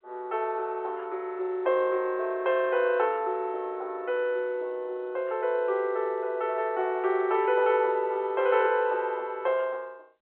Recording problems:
phone line; 320 Hz to 3.5 kHz, G.711

